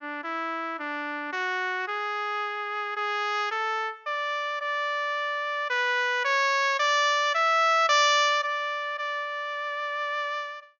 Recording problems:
low-pass filter; nothing above 6.9 kHz

